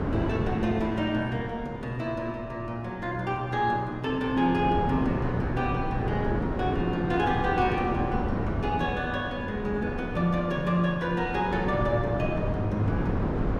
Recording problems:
wind noise; below 410 Hz, SNR 4 dB

